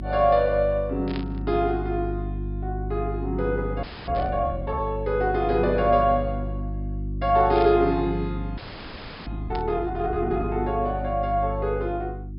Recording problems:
treble missing; nothing above 5.5 kHz
hum; 50 Hz, harmonics up to 350 Hz, SNR 7 dB
static burst; 4 times, first at 1 s; peak -8 dB vs average level
audio freezing; at 4 s and at 8.5 s for 0.5 s

